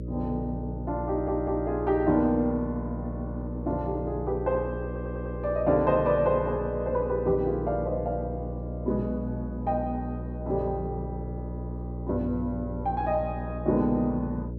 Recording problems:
hum; 60 Hz, harmonics up to 600 Hz, SNR 7 dB
audio stuttering; at 1 s and at 5 s

